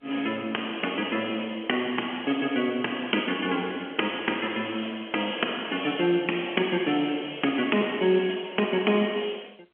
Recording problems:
telephone audio; 220 Hz to 3.3 kHz, G.711

